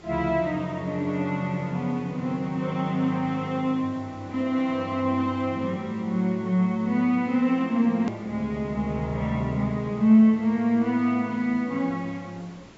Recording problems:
treble missing; nothing above 7.6 kHz
lossy codec; Vorbis, log-spectral distance 2 dB
background hiss; slope -5 dB per octave, SNR 24 dB
edit click; at 8 s

